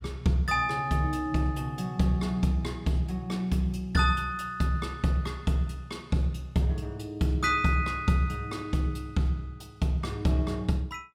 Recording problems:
none

